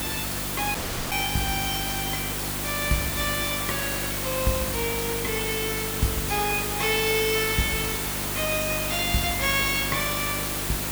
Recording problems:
hum; 50 Hz, harmonics up to 350 Hz, SNR 8 dB
hiss; slope -2 dB per octave, SNR 0 dB
dropout; at 1 s

